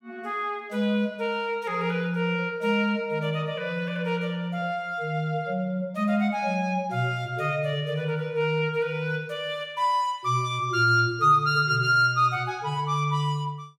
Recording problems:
none

